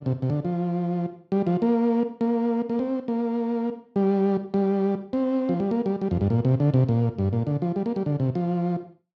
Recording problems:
none

